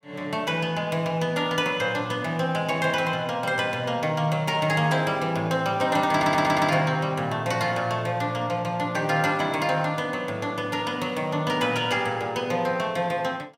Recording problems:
audio stuttering; at 6 s

